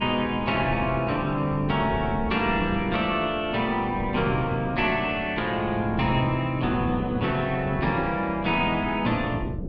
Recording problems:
wind on the microphone; below 270 Hz, SNR 10 dB

